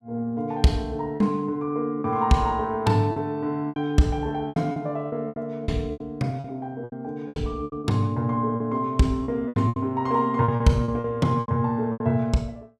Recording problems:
packet loss; 11% of the sound replaced, filled with repeated pitch periods

